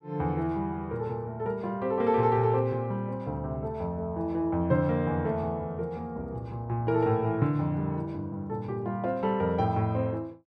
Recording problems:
none

